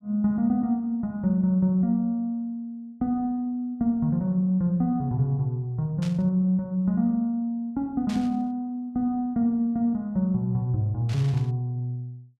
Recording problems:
burst of static; at 6 s, at 8 s and at 11 s; peak -11 dB vs average level

